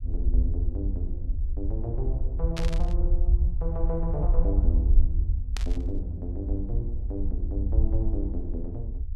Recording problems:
low-frequency rumble; below 60 Hz, SNR -6 dB
burst of static; at 2.5 s and at 5.5 s; peak +3 dB vs average level

